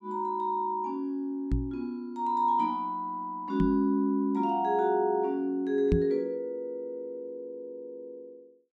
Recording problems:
microphone bump; at 1.5 s, at 3.5 s and at 6 s; peak +6 dB vs average level

